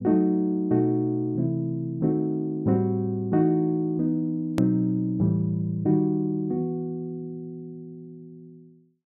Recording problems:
hard cut with a click; at 4.5 s

